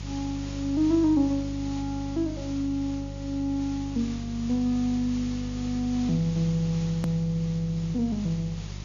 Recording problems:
treble cut off; nothing above 7 kHz
hum; 50 Hz, harmonics up to 400 Hz, SNR 9 dB
background hiss; SNR 17 dB
edit click; at 7 s

